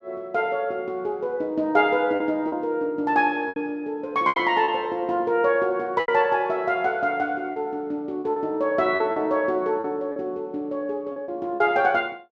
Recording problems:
lost packets; 6% of the sound replaced, filled with repeated pitch periods

